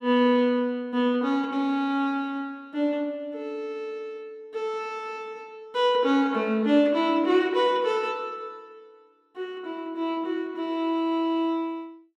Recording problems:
none

